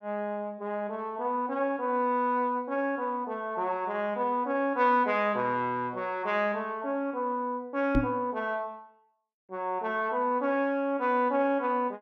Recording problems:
microphone bump; at 8 s; peak +5 dB vs average level

